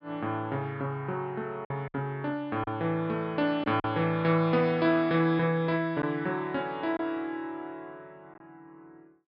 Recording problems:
treble missing; nothing above 5.5 kHz
lost packets; 3% of the sound replaced, filled with silence

